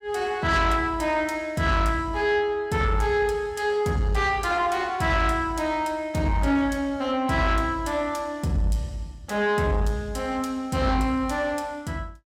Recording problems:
distortion; soft clipping, signal-to-distortion ratio 12 dB

